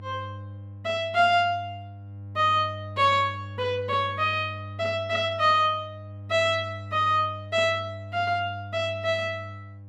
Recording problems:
hum; 50 Hz, harmonics up to 600 Hz, SNR 14 dB

